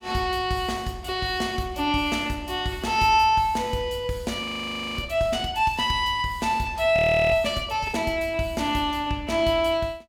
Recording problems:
audio freezing; at 4.5 s for 0.5 s and at 7 s

